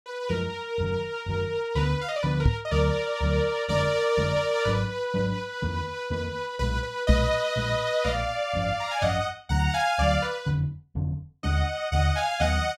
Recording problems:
microphone thump; at 2.5 s and at 7 s; peak +8 dB vs average level

